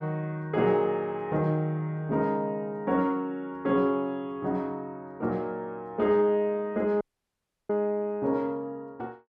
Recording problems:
dropout; at 7 s for 0.5 s

